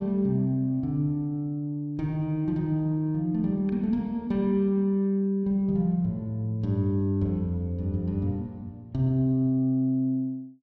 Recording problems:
none

